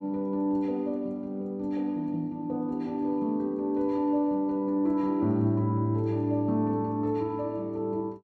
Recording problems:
none

